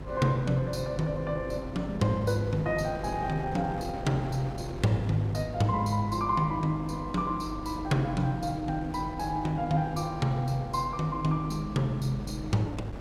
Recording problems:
hum; 50 Hz, harmonics up to 400 Hz, SNR 14 dB
wind noise; below 630 Hz, SNR 13 dB

